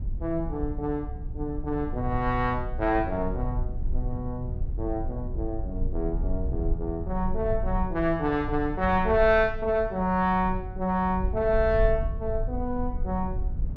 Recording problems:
low-frequency rumble; below 70 Hz, SNR 6 dB

